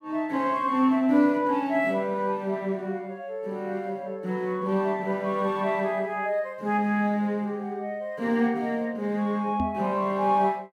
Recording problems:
knock on the microphone; at 9.5 s; peak 0 dB vs average level

